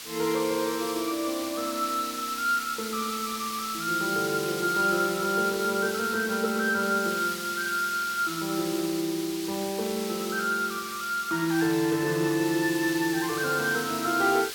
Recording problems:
hiss; slope +2 dB per octave, SNR 8 dB

